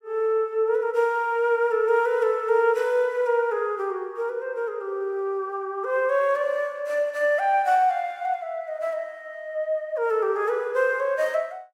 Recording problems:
none

